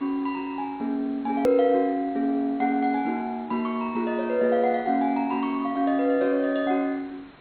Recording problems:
lossy codec; MP2, log-spectral distance 2 dB, nothing above 17.1 kHz
hiss; SNR 25 dB
edit click; at 1.5 s

